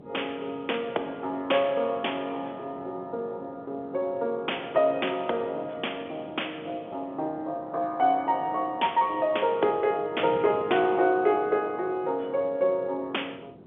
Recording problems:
telephone audio; 300 Hz to 3.5 kHz, G.711
wind on the microphone; below 450 Hz, SNR 20 dB

